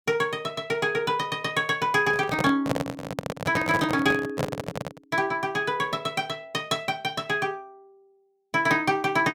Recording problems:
microphone handling noise; from 2 to 5 s; peak +3 dB vs average level

